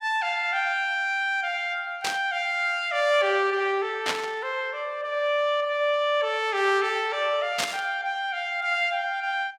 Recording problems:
static burst; at 2 s, at 4 s and at 7.5 s; peak +3 dB vs average level

